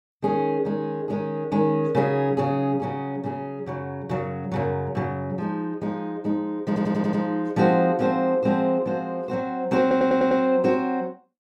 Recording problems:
stutter; at 6.5 s and at 10 s

